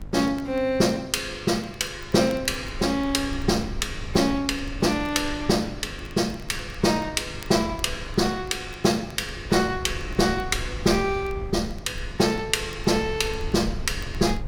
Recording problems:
electrical hum; 50 Hz, harmonics up to 1.1 kHz, SNR 20 dB
wind on the microphone; below 86 Hz, SNR 14 dB
crackling; vinyl, SNR 29 dB

